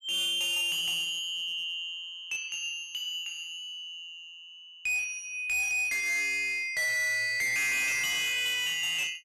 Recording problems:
distorted audio; hard clipping, uneven, signal-to-distortion ratio 7 dB

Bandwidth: 14.5 kHz